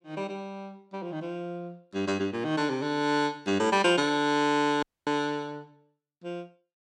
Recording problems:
audio cutting out; at 5 s

